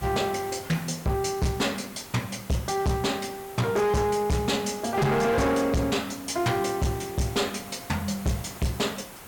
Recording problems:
distorted audio; hard clipping, signal-to-distortion ratio 6 dB
hiss; slope -4 dB per octave, SNR 16 dB

